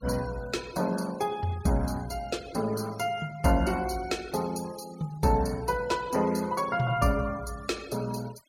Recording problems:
noise reduction artefacts; signal-to-artefact ratio 20 dB

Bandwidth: 16 kHz